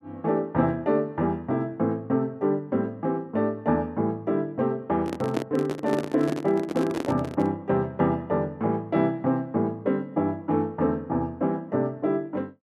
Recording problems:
microphone handling noise; from 5 to 7.5 s; peak +3 dB vs average level

